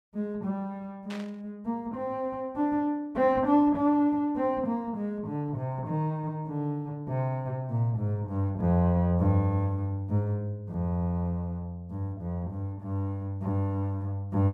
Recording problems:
burst of static; at 1 s; peak -10 dB vs average level

